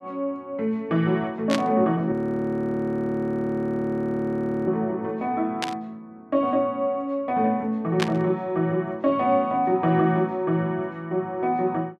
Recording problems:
burst of static; at 1.5 s, at 5.5 s and at 8 s; peak +2 dB vs average level
frozen audio; at 2 s for 2.5 s

